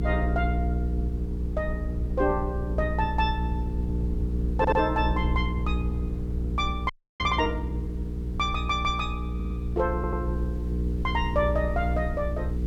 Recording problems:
electrical hum; 60 Hz, harmonics up to 480 Hz, SNR 1 dB
hiss; slope -3 dB per octave, SNR 28 dB
rumble; below 98 Hz, SNR 10 dB
audio stuttering; at 4.5 s, at 9.5 s and at 10 s
audio freezing; at 7 s

